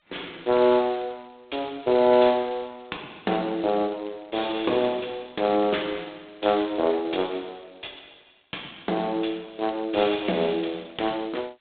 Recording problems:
phone line; 280 Hz to 3.7 kHz, G.726

